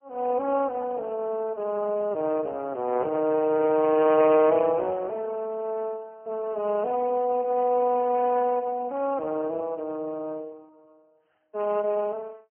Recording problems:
phone line; 260 Hz to 2 kHz, Speex

